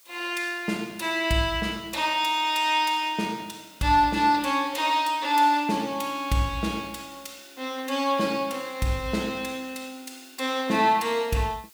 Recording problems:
background hiss; slope +2 dB per octave, SNR 26 dB

